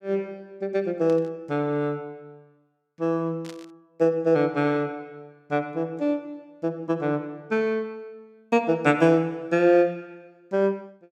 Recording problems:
burst of static; at 1 s and at 3.5 s; peak -14 dB vs average level

